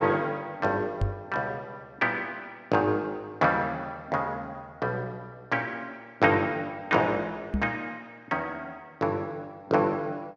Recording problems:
microphone thump; at 1 s and at 7.5 s; peak +4 dB vs average level

